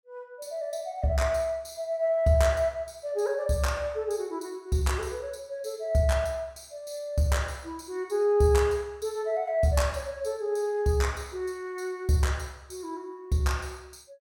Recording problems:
none

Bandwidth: 17.5 kHz